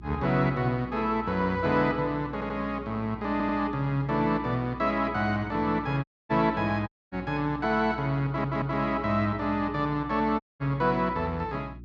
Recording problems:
treble missing; nothing above 8 kHz
mains hum; 60 Hz, harmonics up to 360 Hz, SNR 17 dB
audio stuttering; at 2.5 s, at 3.5 s and at 8.5 s
dropout; at 6 s, at 7 s and at 10 s

